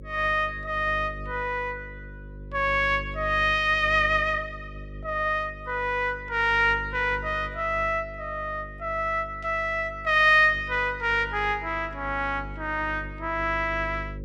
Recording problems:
electrical hum; 50 Hz, harmonics up to 550 Hz, SNR 16 dB

